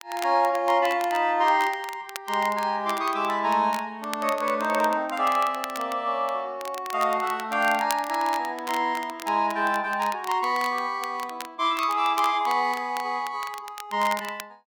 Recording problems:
crackling; vinyl, SNR 15 dB

